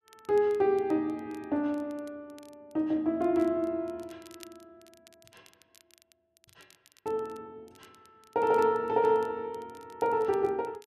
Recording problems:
crackle; vinyl, SNR 30 dB

